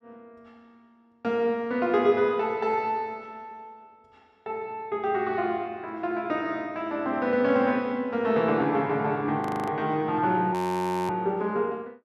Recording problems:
audio freezing; at 9.5 s and at 11 s for 0.5 s

